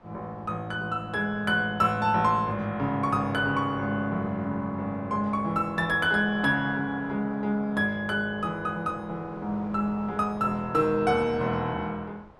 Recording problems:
wind noise; below 1 kHz, SNR 22 dB

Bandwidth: 14.5 kHz